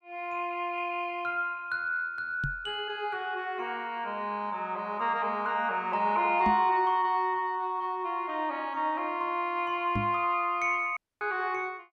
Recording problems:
knock on the microphone; at 2.5 s, at 6.5 s and at 10 s; peak +1 dB vs average level
audio cutting out; at 11 s

